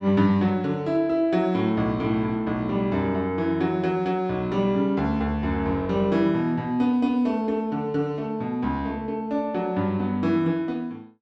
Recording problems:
none

